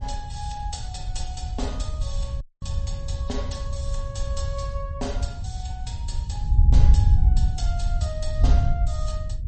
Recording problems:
lossy codec; MP3, log-spectral distance 2 dB, nothing above 8.2 kHz
wind noise; below 80 Hz, SNR -11 dB
dropout; at 2.5 s

